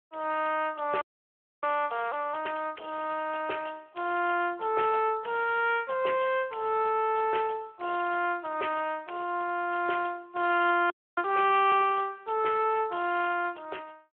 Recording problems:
telephone audio; 320 Hz to 3.2 kHz, Speex
frozen audio; at 1 s for 0.5 s and at 11 s

